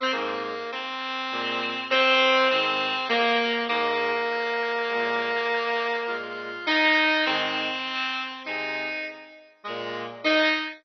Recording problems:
codec artefacts; MP2, log-spectral distance 5 dB, nothing above 5.2 kHz

